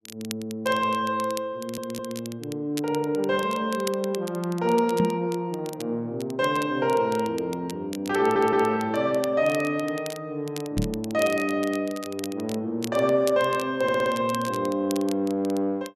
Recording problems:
crackle; vinyl, SNR 16 dB
audio stuttering; at 1.5 s, at 8 s and at 14 s
microphone thump; at 5 s and at 11 s; peak +3 dB vs average level

